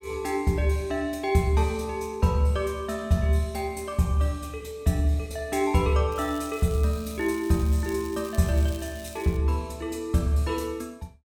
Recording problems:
crackling; from 6 to 9.5 s; loose cable, SNR 20 dB

